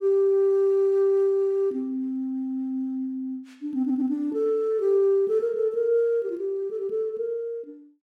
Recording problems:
audio stuttering; at 4 s

